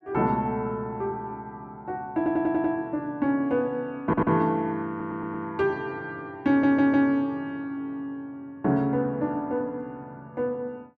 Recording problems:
audio stuttering; 4 times, first at 2 s

